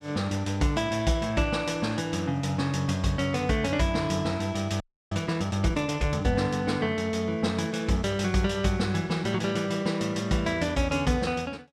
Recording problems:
frozen audio; at 5 s

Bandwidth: 14.5 kHz